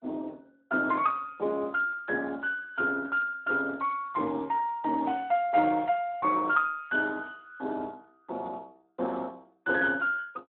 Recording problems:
phone line; 240 Hz to 3 kHz, Speex

